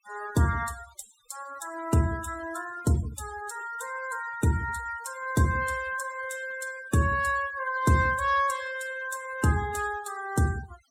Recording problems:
denoising artefacts; signal-to-artefact ratio 15 dB

